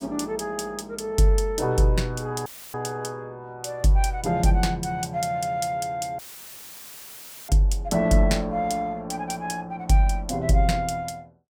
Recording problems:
audio cutting out; at 2.5 s and at 6 s for 1.5 s; filled with static

